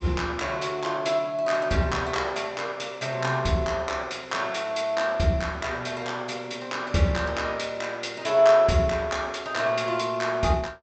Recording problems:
treble cut off; nothing above 8 kHz

